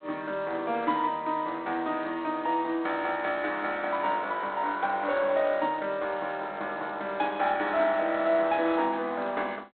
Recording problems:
phone line; 240 Hz to 4 kHz, G.726

